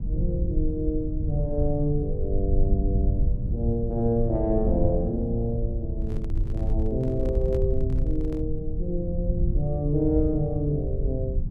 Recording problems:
rumble; below 86 Hz, SNR 1 dB
microphone handling noise; from 6 to 8.5 s; peak -8 dB vs average level

